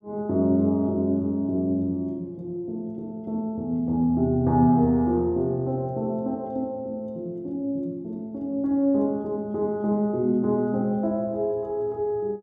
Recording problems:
none

